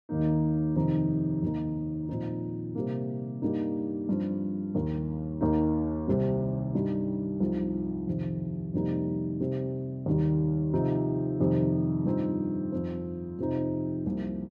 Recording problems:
none

